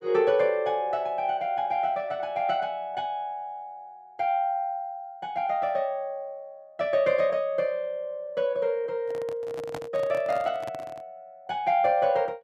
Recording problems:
handling noise; from 9 to 11 s; peak -5 dB vs average level

